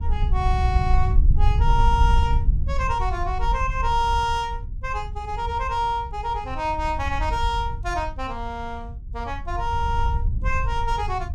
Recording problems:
wind noise; below 68 Hz, SNR 0 dB

